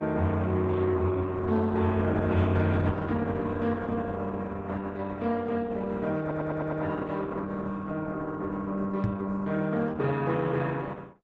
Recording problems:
lossy codec; Opus, log-spectral distance 3 dB
audio stuttering; at 6 s
knock on the microphone; at 9 s; peak +5 dB vs average level

